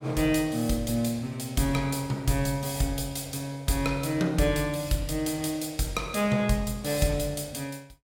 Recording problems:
none

